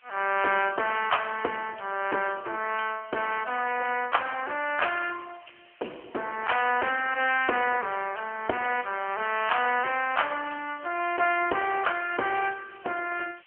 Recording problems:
phone line; 320 Hz to 3.1 kHz, AMR-NB
hiss; SNR 27 dB

